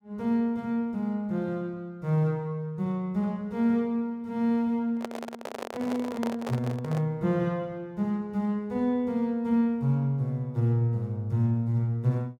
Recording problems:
microphone handling noise; from 5 to 7 s; peak -2 dB vs average level

